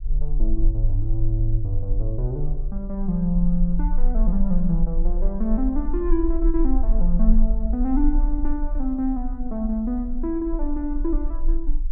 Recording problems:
low-frequency rumble; below 36 Hz, strongest tone 22 Hz, SNR 1 dB

